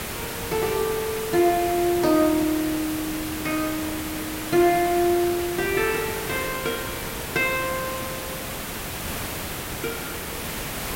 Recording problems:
hiss; slope -3 dB per octave, SNR 6 dB

